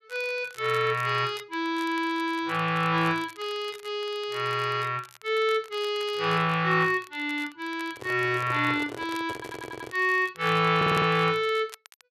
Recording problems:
crackling; vinyl, SNR 23 dB
handling noise; from 8 to 10 s; peak -8 dB vs average level
stutter; at 9.5 s and at 11 s

